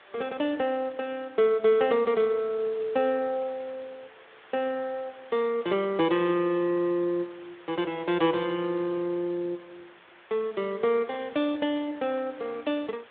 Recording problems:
phone line; 260 Hz to 3.6 kHz, Speex
hiss; SNR 23 dB

